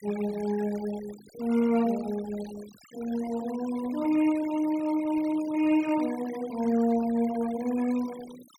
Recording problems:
noise reduction artefacts; signal-to-artefact ratio 18 dB

